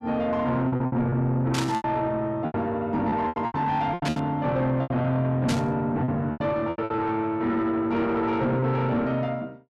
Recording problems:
distortion; soft clipping, signal-to-distortion ratio 10 dB
lost packets; 11% of the sound replaced, filled with repeated pitch periods
burst of static; at 1.5 s, at 4 s and at 5.5 s; peak 0 dB vs average level

